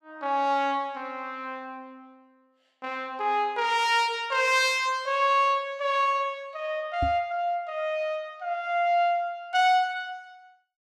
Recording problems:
knock on the microphone; at 7 s; peak -2 dB vs average level

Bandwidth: 14.5 kHz